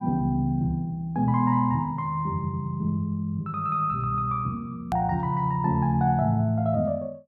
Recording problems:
hard cut with a click; at 5 s

